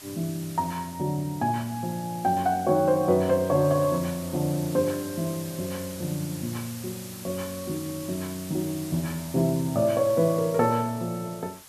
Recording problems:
hiss; slope 0 dB per octave, SNR 14 dB

